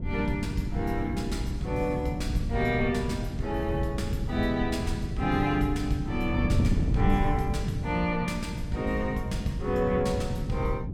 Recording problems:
wind on the microphone; below 160 Hz, SNR 3 dB

